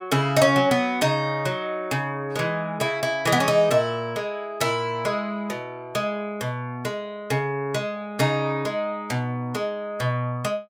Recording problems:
none

